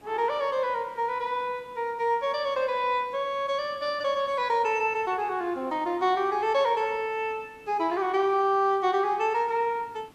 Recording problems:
hiss; slope -5 dB per octave, SNR 28 dB

